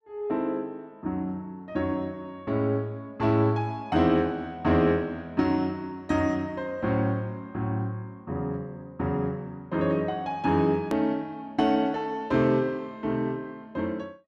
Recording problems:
click at an edit; at 11 s

